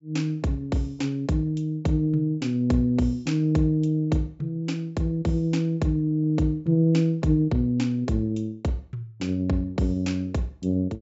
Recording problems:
treble cut off; nothing above 8 kHz

